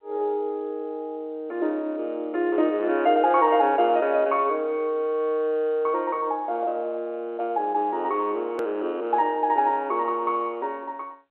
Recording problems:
phone line; 280 Hz to 3.4 kHz, G.711
hard cut with a click; at 8.5 s

